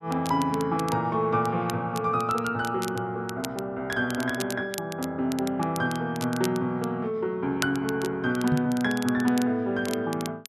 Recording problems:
crackle; vinyl, SNR 14 dB
microphone thump; at 8.5 s; peak +4 dB vs average level

